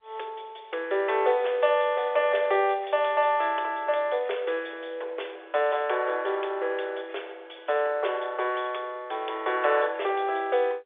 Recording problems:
phone line; 340 Hz to 3.6 kHz, G.711

